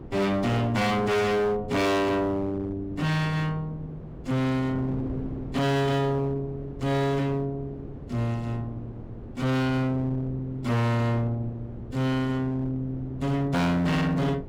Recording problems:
distortion; hard clipping, signal-to-distortion ratio 6 dB
wind on the microphone; below 350 Hz, SNR 15 dB

